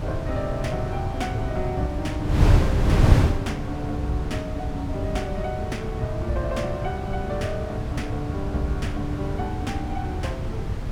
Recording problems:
wind noise; below 160 Hz, SNR -3 dB

